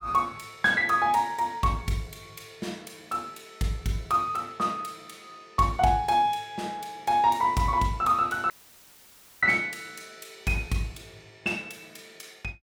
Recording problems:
dropout; at 8.5 s for 1 s

